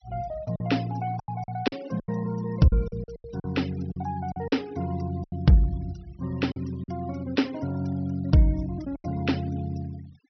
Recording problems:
treble cut off; nothing above 5.7 kHz
denoising artefacts; signal-to-artefact ratio 22 dB
lost packets; 9% of the sound replaced, filled with silence

